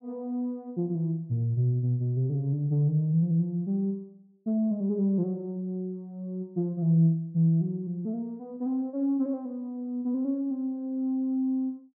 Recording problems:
none

